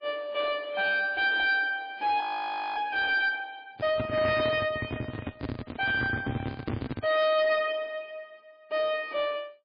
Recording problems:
codec artefacts; MP3, log-spectral distance 3 dB, nothing above 5 kHz
distortion; soft clipping, signal-to-distortion ratio 11 dB
frozen audio; at 2 s for 0.5 s
microphone handling noise; from 4 to 7 s; peak 0 dB vs average level

